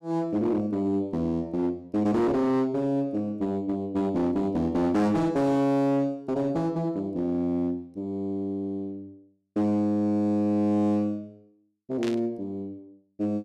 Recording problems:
distorted audio; hard clipping, uneven, signal-to-distortion ratio 11 dB
burst of static; at 12 s; peak -7 dB vs average level

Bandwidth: 13.5 kHz